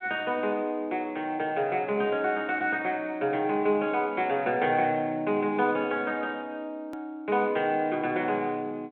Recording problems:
phone line; 170 Hz to 3.5 kHz, G.726
edit click; at 7 s

